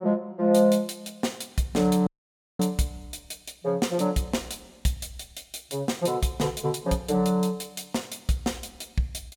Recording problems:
audio cutting out; at 2 s for 0.5 s

